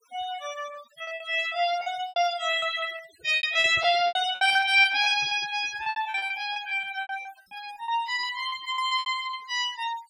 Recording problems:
denoising artefacts; signal-to-artefact ratio 16 dB
lost packets; 15% of the sound replaced, filled with repeated pitch periods
handling noise; from 3 to 6.5 s; peak -15 dB vs average level

